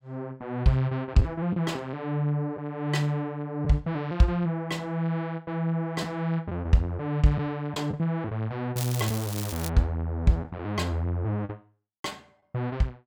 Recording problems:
packet loss; 2% of the sound replaced, filled with the last packet
crackle; at 9 s; loose cable, SNR 8 dB

